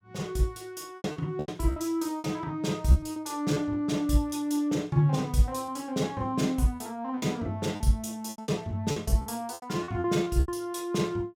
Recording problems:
lost packets; 10% of the sound replaced, filled with repeated pitch periods

